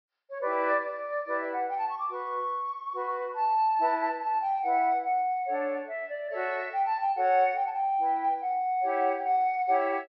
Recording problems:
treble cut off; nothing above 5.5 kHz

